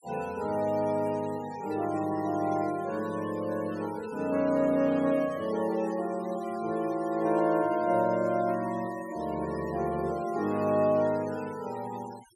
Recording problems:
noise reduction artefacts; signal-to-artefact ratio 19 dB

